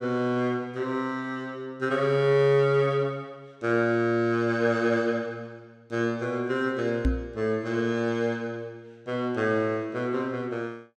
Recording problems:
microphone thump; at 7 s; peak +5 dB vs average level

